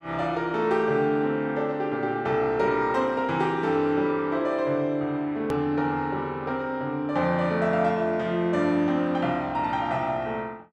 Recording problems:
click at an edit; at 5.5 s

